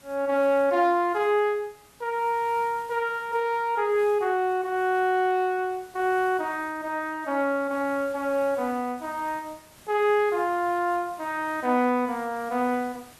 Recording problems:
background hiss; slope -2 dB per octave, SNR 25 dB

